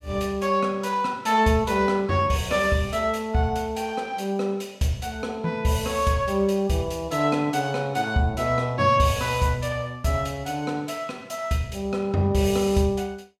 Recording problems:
none

